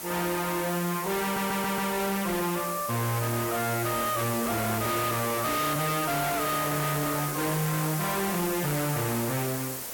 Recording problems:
distortion; hard clipping, signal-to-distortion ratio 7 dB
background hiss; SNR 5 dB
stutter; at 1 s
microphone handling noise; from 4 to 7.5 s; peak -2 dB vs average level

